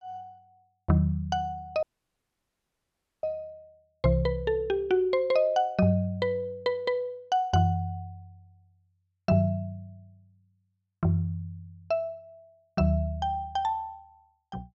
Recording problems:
audio cutting out; at 2 s for 1.5 s

